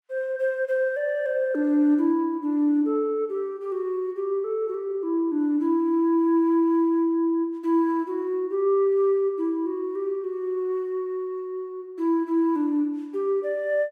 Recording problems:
none

